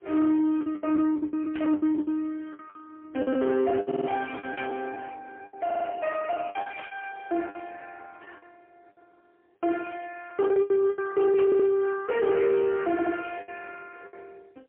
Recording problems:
telephone audio; 220 Hz to 3.2 kHz, AMR-NB, then MP3
distorted audio; soft clipping, signal-to-distortion ratio 10 dB
lost packets; 14% of the sound replaced, filled with the last packet
burst of static; 4 times, first at 1.5 s; peak -8 dB vs average level
stutter; 4 times, first at 4 s

